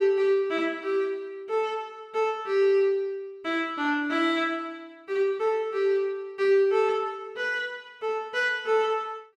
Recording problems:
none

